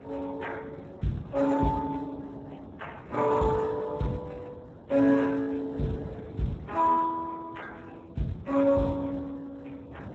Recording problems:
codec artefacts; MP3, then Speex, log-spectral distance 5 dB
wind on the microphone; below 490 Hz, SNR 17 dB

